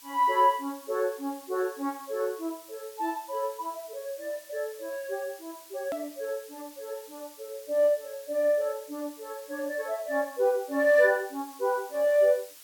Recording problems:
hiss; slope +3 dB per octave, SNR 20 dB
click at an edit; at 6 s

